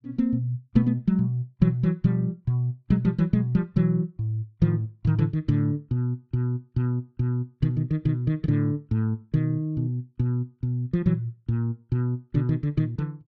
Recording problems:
none

